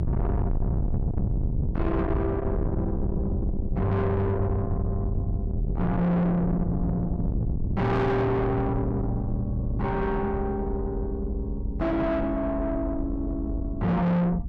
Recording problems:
distortion; soft clipping, signal-to-distortion ratio 6 dB
low-frequency rumble; below 170 Hz, SNR 3 dB

